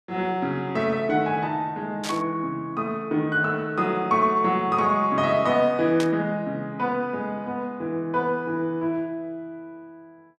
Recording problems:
burst of static; at 2 s and at 6 s; peak -4 dB vs average level

